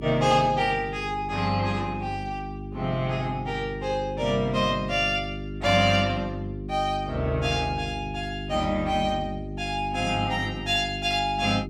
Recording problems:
hum; 50 Hz, harmonics up to 400 Hz, SNR 9 dB

